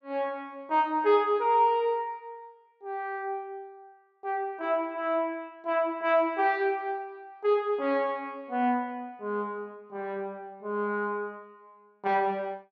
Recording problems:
none

